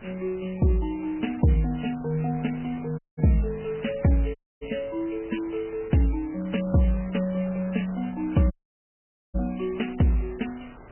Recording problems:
lossy codec; MP3, log-spectral distance 7 dB, nothing above 3 kHz
wind on the microphone; below 1.3 kHz, SNR 20 dB
dropout; at 3 s, at 4.5 s and at 8.5 s for 1 s

